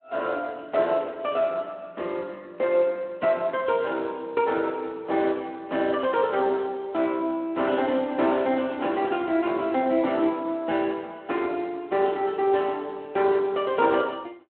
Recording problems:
phone line; 220 Hz to 3.4 kHz, Speex

